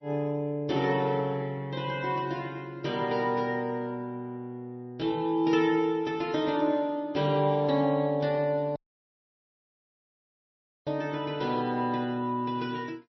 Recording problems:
lossy compression; MP3, log-spectral distance 2 dB, nothing above 5.8 kHz
audio cutting out; at 9 s for 2 s

